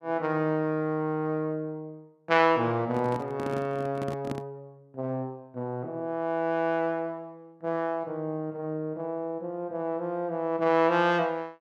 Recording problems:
microphone handling noise; from 3 to 4.5 s; peak -2 dB vs average level

